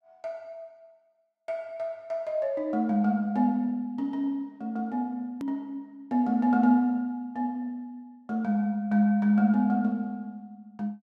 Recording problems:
hard cut with a click; at 5.5 s

